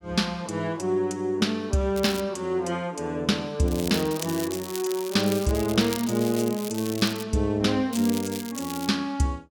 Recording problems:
crackle; at 2 s, from 3.5 to 7 s and at 8 s; loose cable, SNR 11 dB

